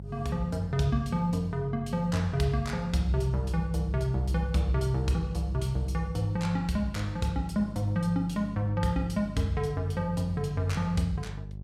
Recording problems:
mains hum; 50 Hz, harmonics up to 400 Hz, SNR 12 dB

